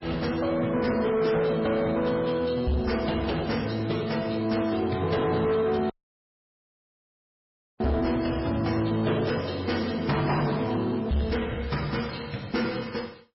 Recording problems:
lossy compression; MP3, log-spectral distance 5 dB, nothing above 5.5 kHz
distortion; soft clipping, signal-to-distortion ratio 11 dB
crackling; at 5 s, from 8 to 9.5 s and from 10 to 12 s; loose cable, SNR 24 dB
dropout; at 6 s for 2 s

